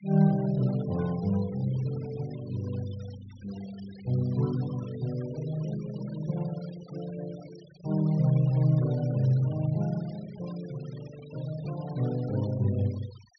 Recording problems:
treble cut off; nothing above 5.9 kHz
denoising artefacts; signal-to-artefact ratio 21 dB

